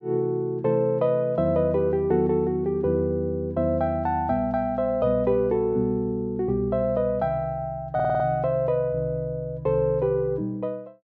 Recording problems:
audio stuttering; at 8 s

